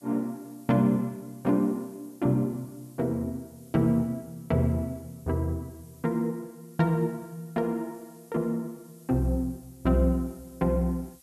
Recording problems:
background hiss; SNR 27 dB

